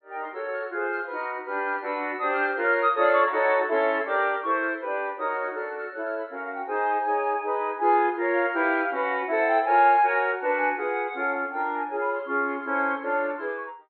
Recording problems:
treble cut off; nothing above 4.3 kHz

